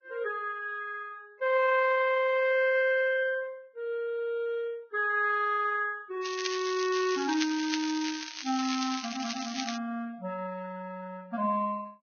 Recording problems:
codec artefacts; Vorbis, log-spectral distance 4 dB, nothing above 5.8 kHz
crackle; from 6 to 10 s; loose cable, SNR 7 dB

